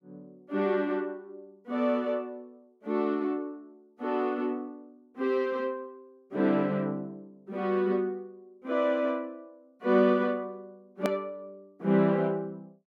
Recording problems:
hard cut with a click; at 11 s

